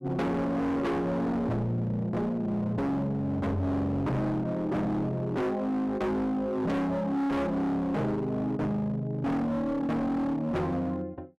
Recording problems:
distortion; hard clipping, signal-to-distortion ratio 6 dB

